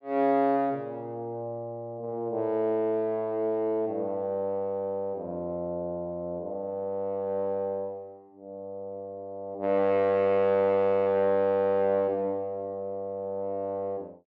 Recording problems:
none

